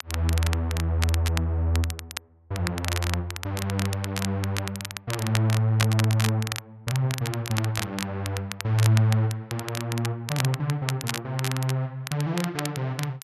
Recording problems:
crackling; vinyl, SNR 7 dB

